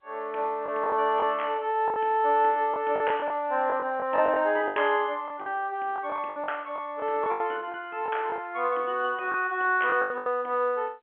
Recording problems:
telephone audio; 280 Hz to 3.3 kHz, G.711
lost packets; 10% of the sound replaced, filled with the last packet

